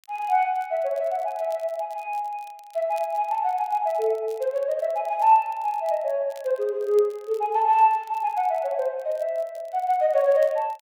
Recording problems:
crackle; vinyl, SNR 30 dB

